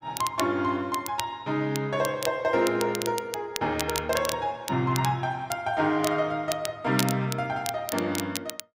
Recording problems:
crackle; vinyl, SNR 8 dB

